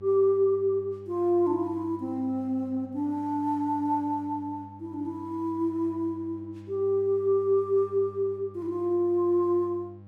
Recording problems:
mains hum; 50 Hz, harmonics up to 800 Hz, SNR 20 dB

